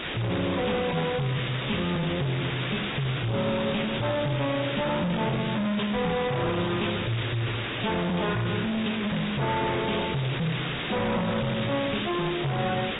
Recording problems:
treble missing; nothing above 3.8 kHz
codec artefacts; AAC, log-spectral distance 10 dB
distorted audio; soft clipping, signal-to-distortion ratio 5 dB
background hiss; SNR 4 dB

